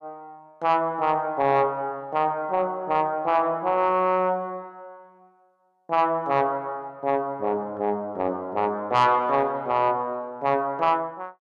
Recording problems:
distorted audio; soft clipping, signal-to-distortion ratio 10 dB

